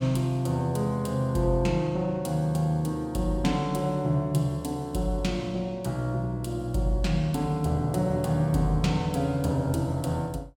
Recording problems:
none

